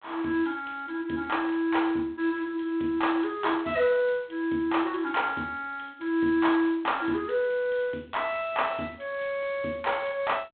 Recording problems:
telephone audio; 190 Hz to 3.8 kHz, G.726

